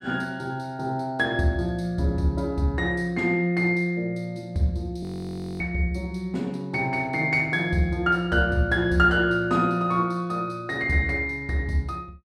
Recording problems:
audio freezing; at 5 s for 0.5 s

